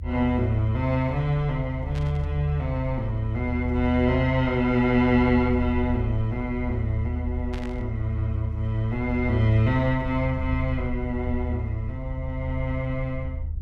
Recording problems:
low-frequency rumble; below 80 Hz, strongest tone 78 Hz, SNR 6 dB
burst of static; at 2 s and at 7.5 s; peak -11 dB vs average level

